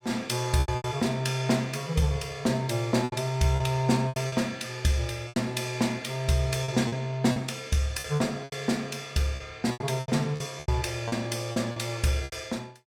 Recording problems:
lost packets; 10% of the sound replaced, filled with repeated pitch periods

